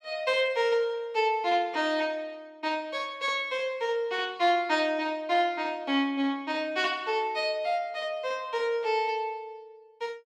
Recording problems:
none

